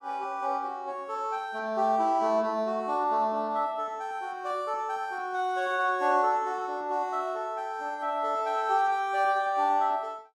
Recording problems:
none

